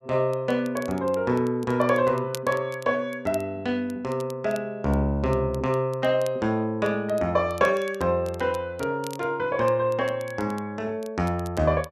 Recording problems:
crackling; vinyl, SNR 22 dB

